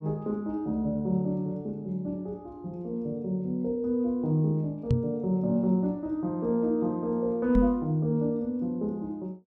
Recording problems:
knock on the microphone; at 5 s and at 7.5 s; peak +7 dB vs average level

